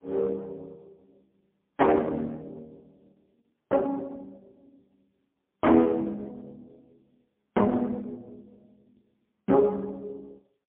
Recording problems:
phone line; 220 Hz to 2.5 kHz, AMR-NB, then MP3

